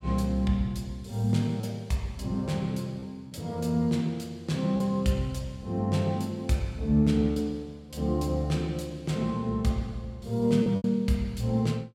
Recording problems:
packet loss; 2% of the sound replaced, filled with repeated pitch periods

